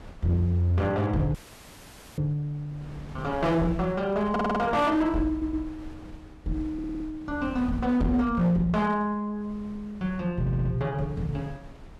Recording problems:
distortion; hard clipping, signal-to-distortion ratio 12 dB
wind on the microphone; below 280 Hz, SNR 19 dB
audio cutting out; at 1.5 s for 1 s
audio stuttering; 4 times, first at 4.5 s

